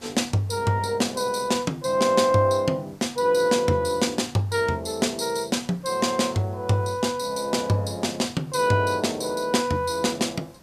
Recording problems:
background hiss; SNR 28 dB

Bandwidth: 14.5 kHz